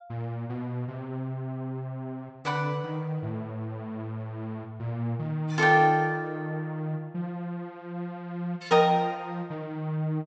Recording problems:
treble cut off; nothing above 8 kHz

